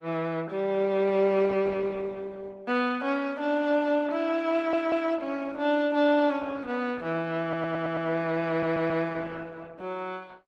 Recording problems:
lossy compression; Opus, log-spectral distance 3 dB
audio stuttering; at 4.5 s, at 7.5 s and at 8.5 s

